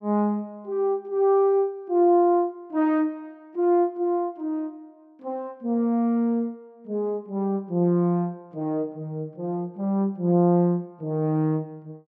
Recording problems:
none

